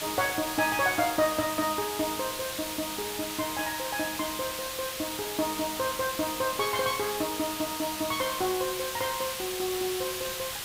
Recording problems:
hiss; slope +1 dB per octave, SNR 3 dB

